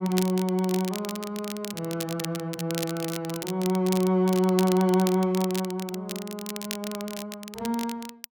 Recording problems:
crackle; vinyl, SNR 10 dB

